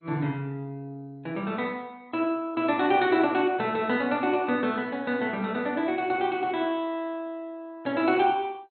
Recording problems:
codec artefacts; MP2, log-spectral distance 2 dB, nothing above 4 kHz

